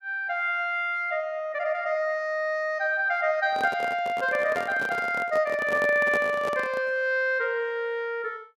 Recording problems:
microphone handling noise; from 3.5 to 7 s; peak -3 dB vs average level

